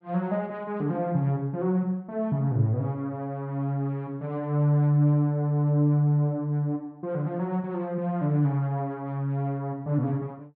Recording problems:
none

